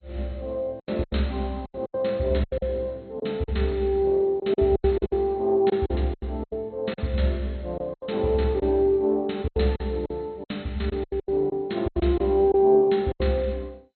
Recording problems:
lossy compression; MP2, log-spectral distance 2 dB, nothing above 4.2 kHz
lost packets; 13% of the sound replaced, filled with silence

